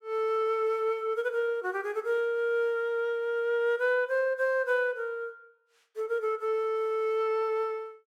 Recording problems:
none

